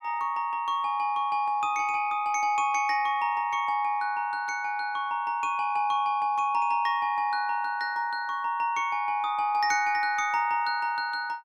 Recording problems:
none

